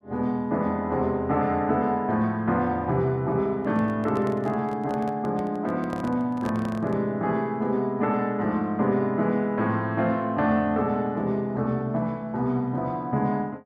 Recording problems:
microphone handling noise; from 3.5 to 7 s; peak -7 dB vs average level

